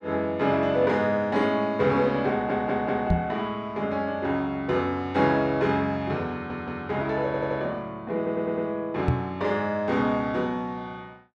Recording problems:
stutter; 4 times, first at 2.5 s
microphone thump; at 3 s and at 9 s; peak +5 dB vs average level

